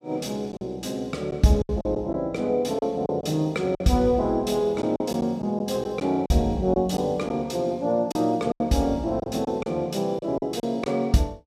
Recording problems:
packet loss; 7% of the sound replaced, filled with silence

